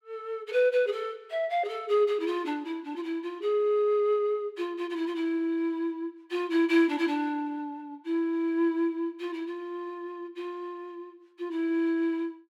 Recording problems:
none

